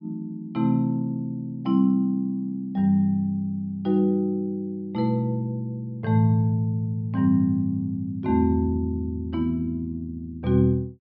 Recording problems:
treble missing; nothing above 5.5 kHz

